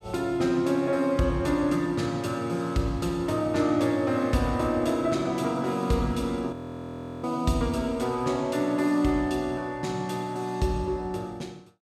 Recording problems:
frozen audio; at 6.5 s for 0.5 s

